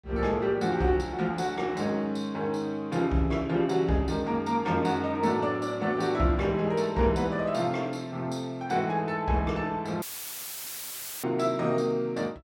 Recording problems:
dropout; at 10 s for 1 s; filled with static

